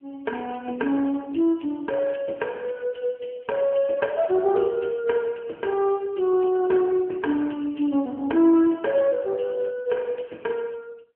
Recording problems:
phone line; 240 Hz to 2.4 kHz, AMR-NB

